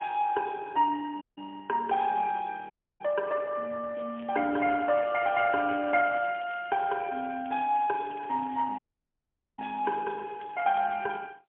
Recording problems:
phone line; 260 Hz to 3.6 kHz, AMR-NB, then MP3
dropout; at 1 s, at 2.5 s and at 9 s for 1 s
crackle; from 4 to 11 s; loose cable, SNR 24 dB

